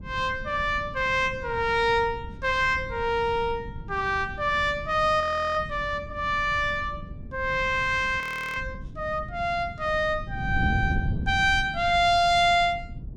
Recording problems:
wind noise; below 160 Hz, SNR 12 dB
audio freezing; at 5 s and at 8 s

